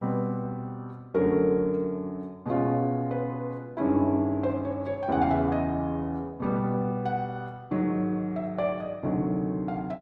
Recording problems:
lossy codec; Opus, log-spectral distance 2 dB

